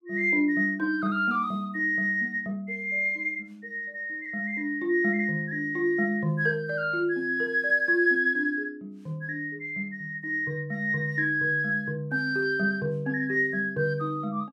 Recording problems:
none

